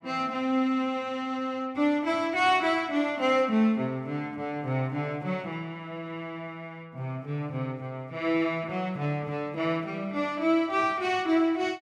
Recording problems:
none

